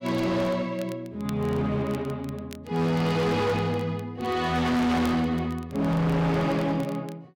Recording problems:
distorted audio; hard clipping, uneven, signal-to-distortion ratio 7 dB
crackling; vinyl, SNR 25 dB

